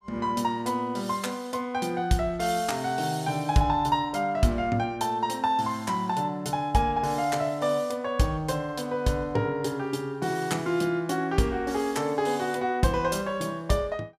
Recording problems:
none

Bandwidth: 15 kHz